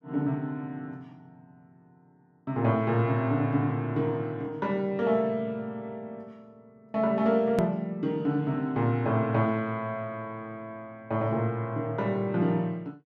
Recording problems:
hard cut with a click; at 7.5 s

